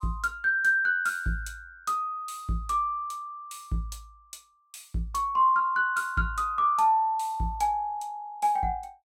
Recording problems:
none

